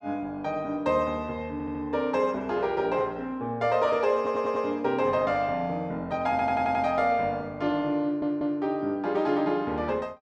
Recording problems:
audio stuttering; 4 times, first at 1.5 s

